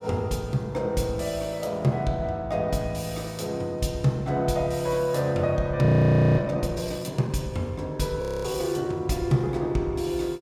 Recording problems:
frozen audio; at 6 s for 0.5 s and at 8 s

